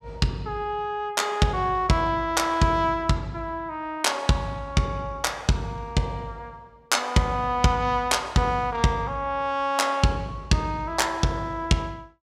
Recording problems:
none

